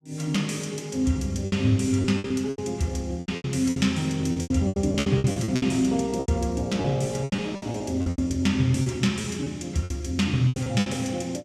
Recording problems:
packet loss; 15% of the sound replaced, filled with repeated pitch periods

